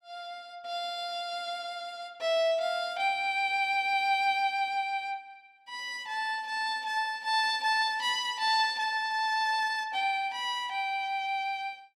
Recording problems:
none

